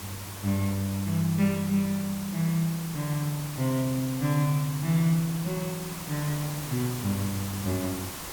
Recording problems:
hiss; SNR 9 dB

